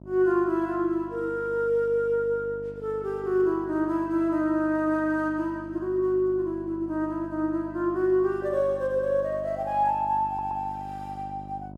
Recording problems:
hum; 50 Hz, harmonics up to 1 kHz, SNR 17 dB
stutter; at 10 s

